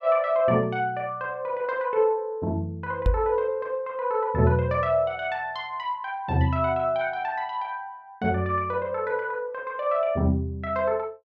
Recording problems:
microphone bump; at 3 s; peak +5 dB vs average level

